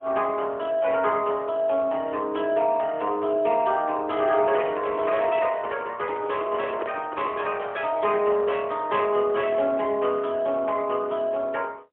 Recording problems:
phone line; 320 Hz to 3.3 kHz, AMR-NB, then MP3
microphone handling noise; from 4.5 to 7.5 s; peak -3 dB vs average level

